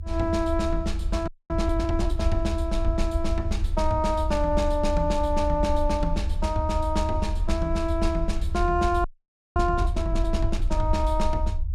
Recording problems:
low-frequency rumble; below 74 Hz, SNR 2 dB
audio freezing; at 1.5 s and at 9 s for 0.5 s

